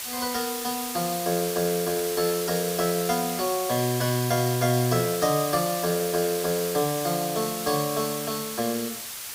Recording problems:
background hiss; slope +2 dB per octave, SNR 5 dB

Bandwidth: 15.5 kHz